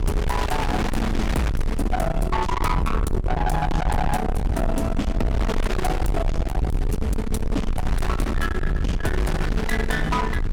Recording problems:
distortion; soft clipping, signal-to-distortion ratio 6 dB
mains hum; 60 Hz, harmonics up to 480 Hz, SNR 8 dB
low-frequency rumble; below 160 Hz, SNR 1 dB
wind on the microphone; below 2.1 kHz, SNR 8 dB

